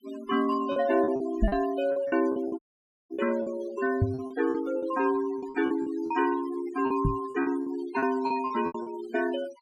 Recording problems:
noise reduction artefacts; signal-to-artefact ratio 16 dB
packet loss; 13% of the sound replaced, filled with repeated pitch periods
knock on the microphone; at 1.5 s, at 4 s and at 7 s; peak +6 dB vs average level
audio cutting out; at 2.5 s for 0.5 s

